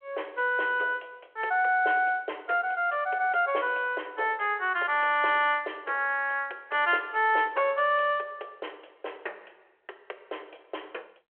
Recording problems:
phone line; 370 Hz to 3.3 kHz, G.726

